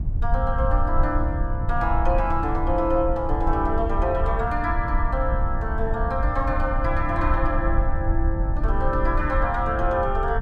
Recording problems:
rumble; below 68 Hz, SNR 2 dB

